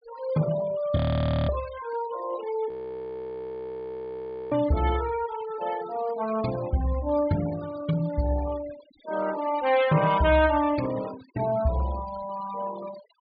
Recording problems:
treble cut off; nothing above 4.8 kHz
noise reduction artefacts; signal-to-artefact ratio 17 dB
frozen audio; at 1 s for 0.5 s and at 2.5 s for 2 s

